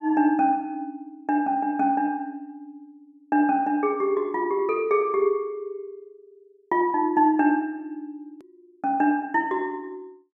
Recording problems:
click at an edit; at 8.5 s

